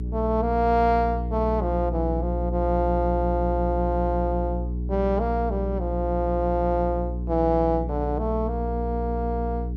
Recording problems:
electrical hum; 60 Hz, harmonics up to 420 Hz, SNR 4 dB

